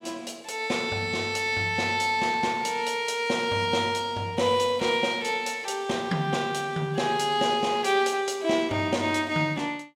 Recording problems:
none

